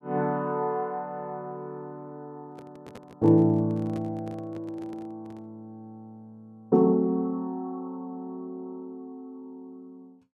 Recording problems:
handling noise; from 2.5 to 5.5 s; peak -11 dB vs average level

